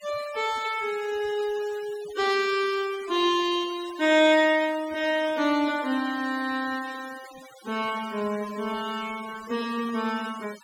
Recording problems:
denoising artefacts; signal-to-artefact ratio 18 dB

